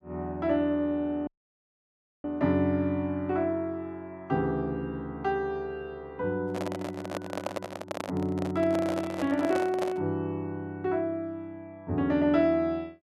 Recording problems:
audio cutting out; at 1.5 s for 1 s
microphone handling noise; from 6.5 to 10 s; peak +1 dB vs average level

